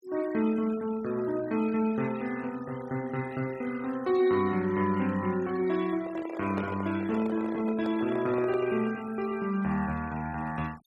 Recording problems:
noise reduction artefacts; signal-to-artefact ratio 19 dB
microphone handling noise; from 6 to 9 s; peak -3 dB vs average level

